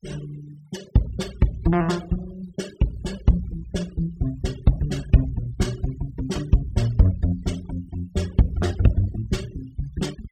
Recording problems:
denoising artefacts; signal-to-artefact ratio 19 dB

